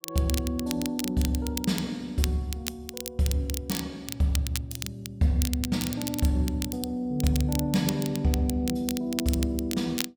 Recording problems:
crackling; vinyl, SNR 8 dB

